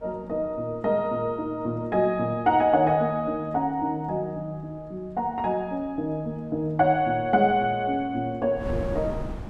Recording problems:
wind noise; below 280 Hz, SNR 18 dB

